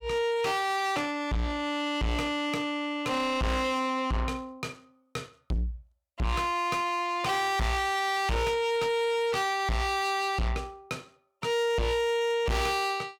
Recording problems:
distorted audio; soft clipping, signal-to-distortion ratio 6 dB

